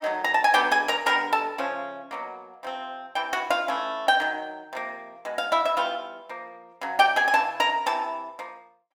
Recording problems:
none

